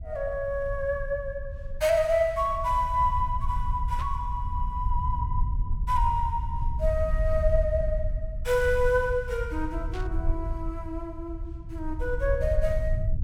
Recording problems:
low-frequency rumble; below 72 Hz, SNR 4 dB
burst of static; at 4 s and at 10 s; peak -12 dB vs average level

